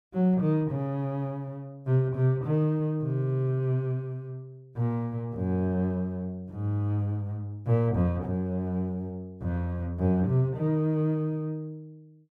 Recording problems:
none

